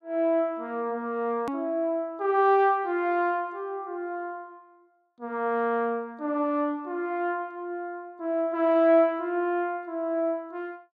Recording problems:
hard cut with a click; at 1.5 s

